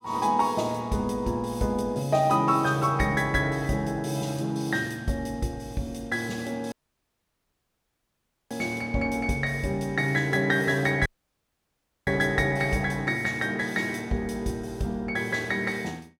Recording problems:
dropout; at 6.5 s for 2 s and at 11 s for 1 s

